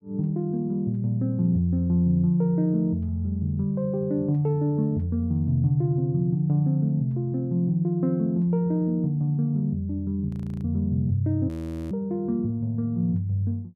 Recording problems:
frozen audio; at 10 s and at 11 s

